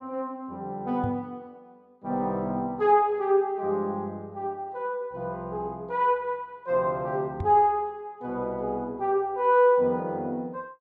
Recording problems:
microphone thump; at 1 s and at 7.5 s; peak -2 dB vs average level

